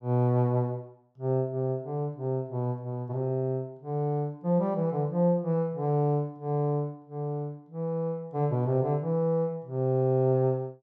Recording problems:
none

